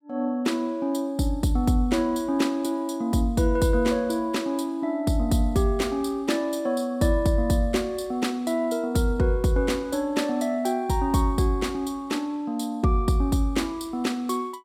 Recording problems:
none

